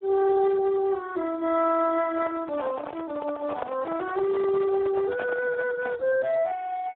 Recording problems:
phone line; 340 Hz to 2.2 kHz, Speex
handling noise; from 2 to 6 s; peak -4 dB vs average level

